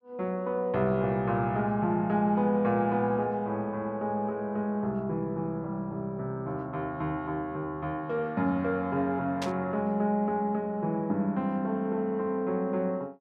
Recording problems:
burst of static; at 9.5 s; peak -3 dB vs average level

